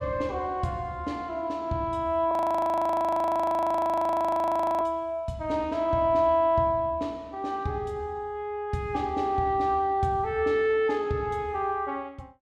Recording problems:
audio freezing; at 2.5 s for 2.5 s

